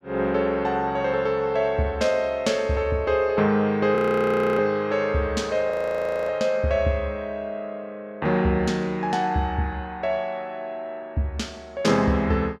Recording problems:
audio freezing; at 4 s for 0.5 s and at 5.5 s for 0.5 s

